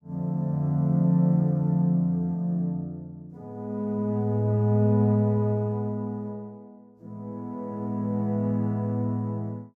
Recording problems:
none

